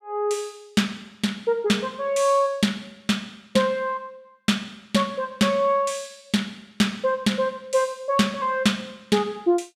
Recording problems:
none

